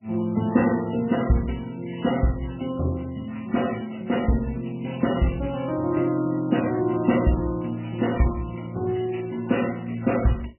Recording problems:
lossy codec; MP3, log-spectral distance 8 dB, nothing above 2.9 kHz

